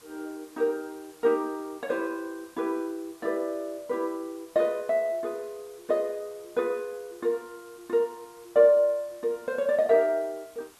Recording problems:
hiss; SNR 26 dB

